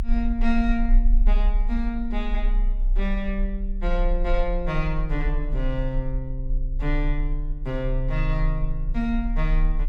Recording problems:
rumble; below 34 Hz, strongest tone 32 Hz, SNR -2 dB

